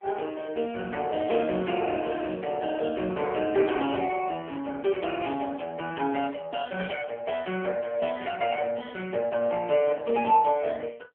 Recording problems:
phone line; 260 Hz to 3.2 kHz, AMR-NB

